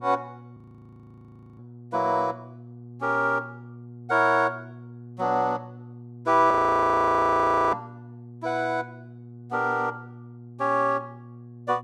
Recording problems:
hum; 60 Hz, harmonics up to 720 Hz, SNR 19 dB
audio freezing; at 0.5 s for 1 s and at 6.5 s for 1 s

